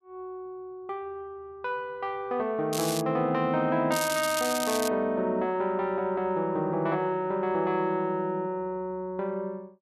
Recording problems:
crackle; at 2.5 s and at 4 s; loose cable, SNR 5 dB

